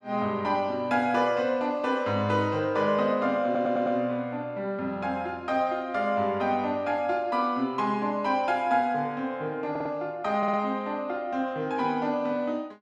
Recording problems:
audio stuttering; at 3.5 s, at 9.5 s and at 10 s

